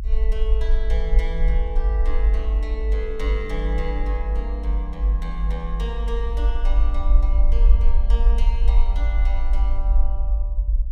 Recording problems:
low-frequency rumble; below 50 Hz, SNR -11 dB

